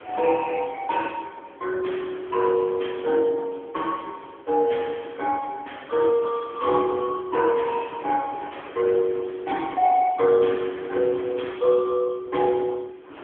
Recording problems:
telephone audio; 260 Hz to 3.3 kHz, AMR-NB
wind on the microphone; below 1.6 kHz, SNR 19 dB

